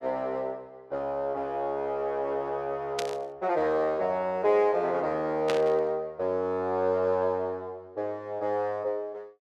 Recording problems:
static burst; at 3 s and at 5.5 s; peak 0 dB vs average level

